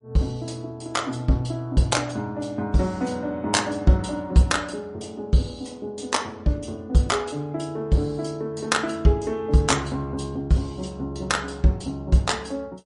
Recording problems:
lossy compression; MP3, log-spectral distance 2 dB, nothing above 10.4 kHz

